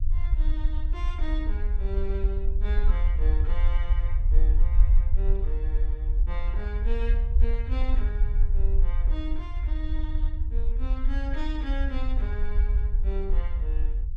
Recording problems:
low-frequency rumble; below 52 Hz, SNR -12 dB

